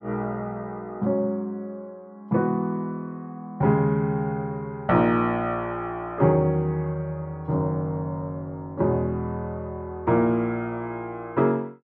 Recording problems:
none

